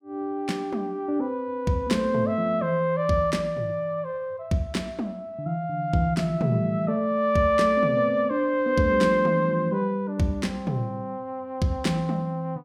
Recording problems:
none

